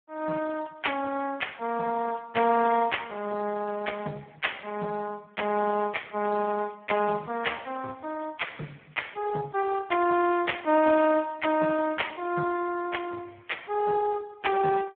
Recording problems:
phone line; 170 Hz to 3.3 kHz, Speex

